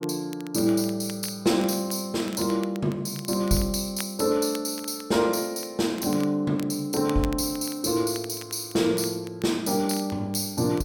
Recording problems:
crackling; vinyl, SNR 20 dB

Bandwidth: 17 kHz